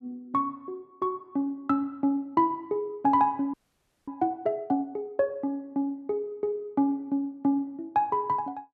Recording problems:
frozen audio; at 3.5 s for 0.5 s

